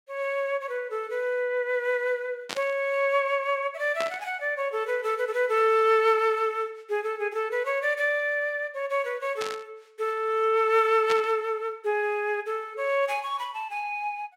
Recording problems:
static burst; 4 times, first at 2.5 s; peak -2 dB vs average level

